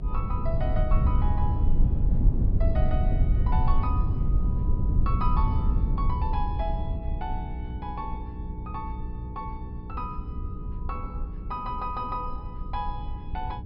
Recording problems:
low-pass filter; nothing above 5.5 kHz
hum; 60 Hz, harmonics up to 480 Hz, SNR 6 dB
low-frequency rumble; below 84 Hz, SNR -8 dB
wind on the microphone; below 130 Hz, SNR 7 dB

